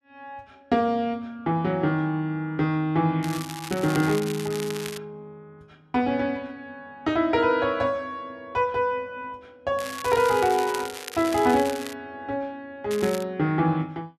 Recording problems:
crackle; from 3 to 5 s, from 10 to 12 s and at 13 s; loose cable, SNR 12 dB

